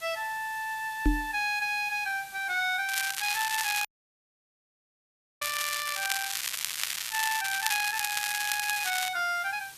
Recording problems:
hiss; slope +2 dB per octave, SNR 16 dB
knock on the microphone; at 1 s and at 5.5 s; peak +7 dB vs average level
crackle; at 3 s and from 5.5 to 9 s; loose cable, SNR 1 dB
audio cutting out; at 4 s for 1.5 s

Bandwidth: 14.5 kHz